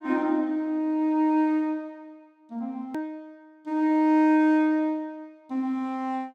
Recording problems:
hard cut with a click; at 3 s

